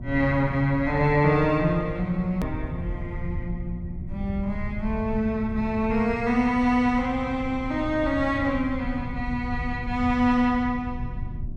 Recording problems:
hum; 60 Hz, harmonics up to 720 Hz, SNR 19 dB
rumble; below 110 Hz, SNR 11 dB
click at an edit; at 2.5 s

